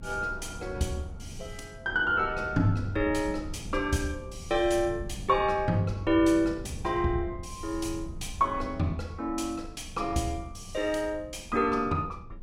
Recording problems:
rumble; below 130 Hz, SNR 13 dB

